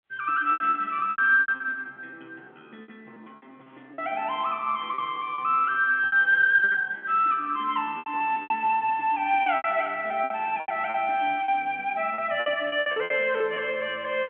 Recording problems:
phone line; 260 Hz to 3.5 kHz, G.711
lost packets; 13% of the sound replaced, filled with repeated pitch periods

